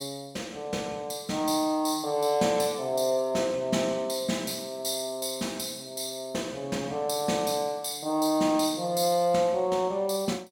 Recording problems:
none

